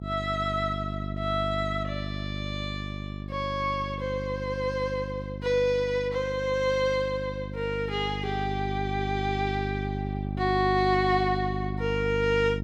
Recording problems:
mains hum; 50 Hz, harmonics up to 650 Hz, SNR 6 dB

